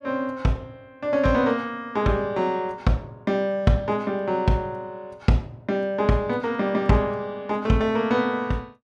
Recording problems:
none

